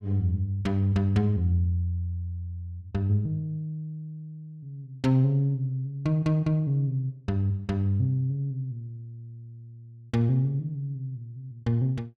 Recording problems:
none

